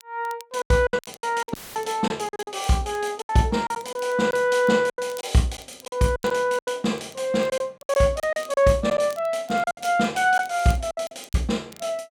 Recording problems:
crackle; vinyl, SNR 26 dB
lost packets; 12% of the sound replaced, filled with silence
audio cutting out; at 1.5 s; filled with static

